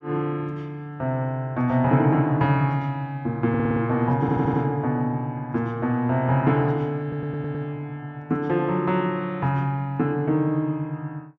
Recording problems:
stutter; at 3.5 s, at 4 s and at 7 s

